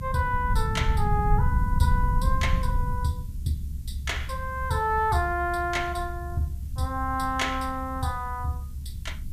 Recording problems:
background hiss; SNR 27 dB
low-frequency rumble; below 96 Hz, SNR 2 dB

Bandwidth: 14.5 kHz